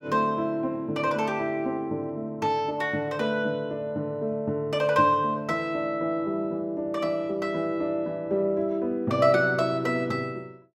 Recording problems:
none

